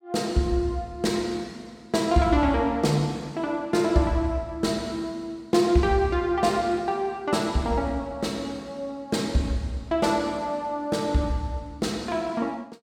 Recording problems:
none

